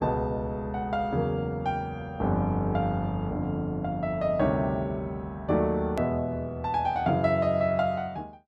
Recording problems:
edit click; at 6 s

